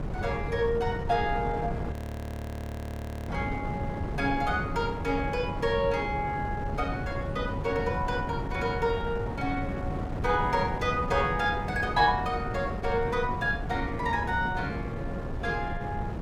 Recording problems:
wind on the microphone; below 320 Hz, SNR 5 dB
frozen audio; at 2 s for 1.5 s

